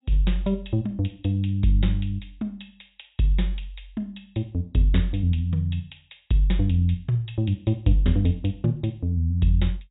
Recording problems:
low-pass filter; nothing above 4 kHz

